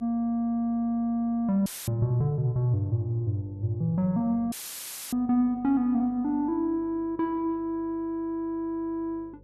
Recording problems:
electrical hum; 50 Hz, harmonics up to 550 Hz, SNR 26 dB
audio cutting out; at 1.5 s and at 4.5 s for 0.5 s; filled with static

